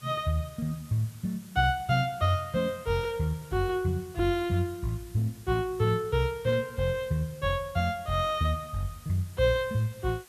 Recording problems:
hiss; slope 0 dB per octave, SNR 23 dB

